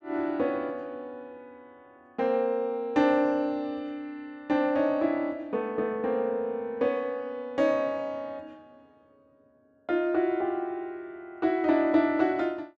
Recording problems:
none

